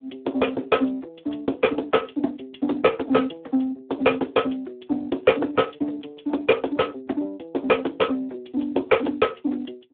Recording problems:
phone line; 220 Hz to 3.5 kHz, Speex

